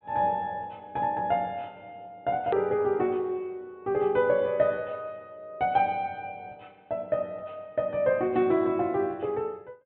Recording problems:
treble missing; nothing above 4 kHz
edit click; at 2.5 s

